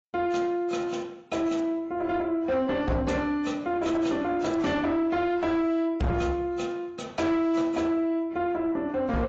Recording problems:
lossy codec; AAC, log-spectral distance 2 dB, nothing above 7.3 kHz
distorted audio; soft clipping, signal-to-distortion ratio 10 dB

